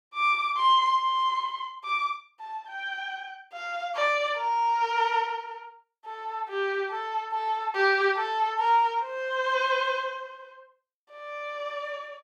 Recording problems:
none

